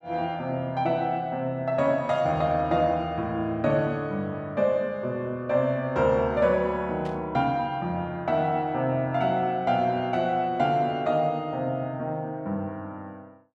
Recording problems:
burst of static; at 7 s; peak -15 dB vs average level

